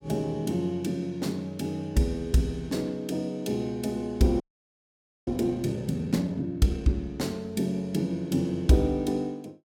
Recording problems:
frozen audio; at 4.5 s for 1 s

